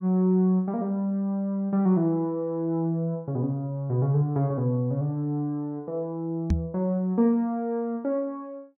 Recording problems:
microphone thump; at 6.5 s; peak +6 dB vs average level

